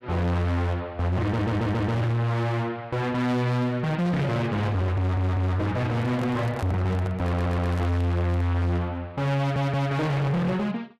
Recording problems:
distortion; hard clipping, signal-to-distortion ratio 6 dB
stutter; 4 times, first at 1.5 s
handling noise; from 6 to 9 s; peak -5 dB vs average level

